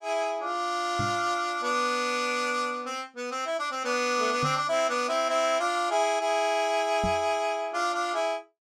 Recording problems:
knock on the microphone; at 1 s, at 4.5 s and at 7 s; peak -2 dB vs average level

